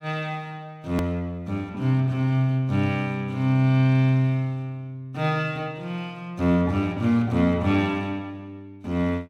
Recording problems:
edit click; at 1 s

